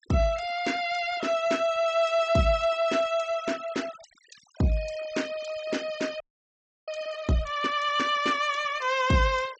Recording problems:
treble missing; nothing above 8 kHz
denoising artefacts; signal-to-artefact ratio 19 dB
frozen audio; at 6 s for 0.5 s

